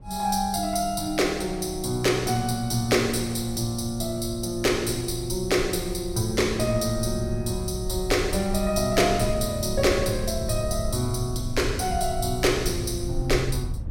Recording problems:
low-frequency rumble; below 94 Hz, SNR 10 dB

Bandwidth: 16.5 kHz